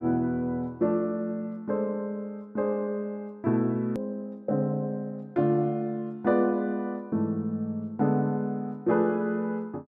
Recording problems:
edit click; at 4 s

